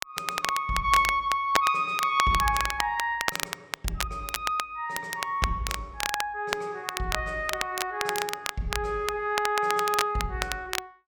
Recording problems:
crackling; vinyl, SNR 5 dB

